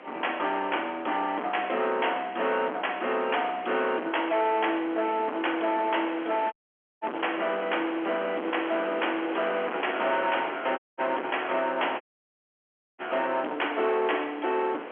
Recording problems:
phone line; 240 Hz to 3.3 kHz, G.711
distortion; hard clipping, uneven, signal-to-distortion ratio 7 dB
wind on the microphone; below 1.8 kHz, SNR 12 dB
dropout; at 6.5 s, at 11 s and at 12 s for 1 s

